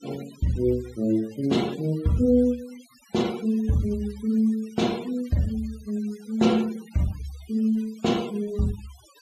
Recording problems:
denoising artefacts; signal-to-artefact ratio 21 dB

